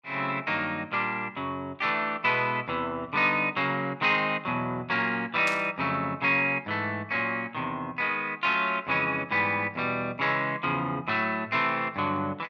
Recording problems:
burst of static; at 5.5 s; peak -4 dB vs average level

